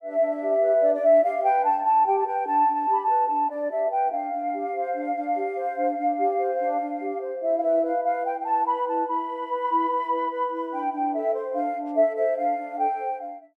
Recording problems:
none

